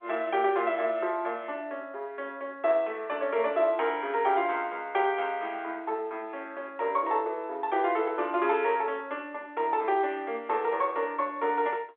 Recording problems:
telephone audio; 320 Hz to 3.6 kHz, G.711

